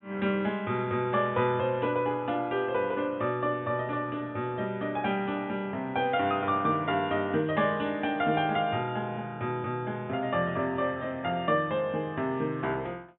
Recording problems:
treble missing; nothing above 3.7 kHz

